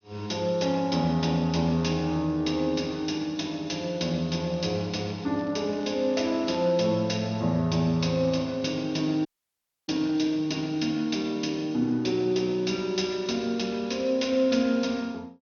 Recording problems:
low-pass filter; nothing above 6.2 kHz
crackle; from 4.5 to 7 s; loose cable, SNR 27 dB
dropout; at 9.5 s for 0.5 s

